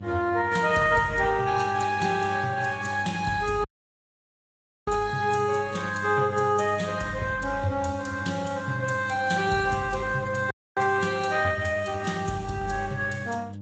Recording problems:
codec artefacts; AAC, then Speex, log-spectral distance 5 dB, nothing above 7.8 kHz
hum; 50 Hz, harmonics up to 600 Hz, SNR 13 dB
dropout; at 3.5 s for 1 s and at 11 s

